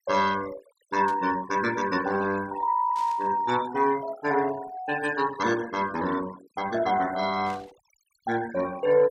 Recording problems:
noise reduction artefacts; signal-to-artefact ratio 15 dB
static burst; at 1 s, at 3 s and at 7.5 s; peak -15 dB vs average level

